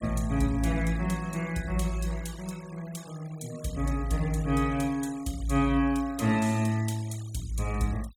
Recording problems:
denoising artefacts; signal-to-artefact ratio 19 dB

